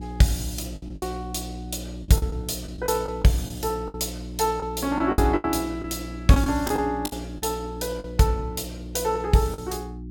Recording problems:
hum; 60 Hz, harmonics up to 360 Hz, SNR 11 dB
packet loss; 8% of the sound replaced, filled with the last packet

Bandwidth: 17.5 kHz